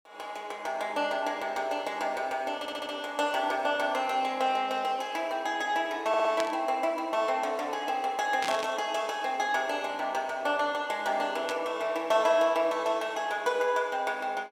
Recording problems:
audio stuttering; at 2.5 s and at 6 s
static burst; at 6.5 s, at 8.5 s and at 11 s; peak -2 dB vs average level

